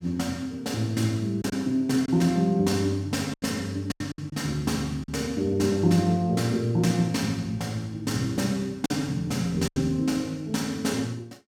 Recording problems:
lost packets; 4% of the sound replaced, filled with silence

